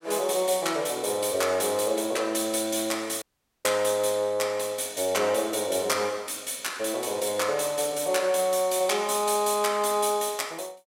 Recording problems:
dropout; at 3 s

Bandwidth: 16 kHz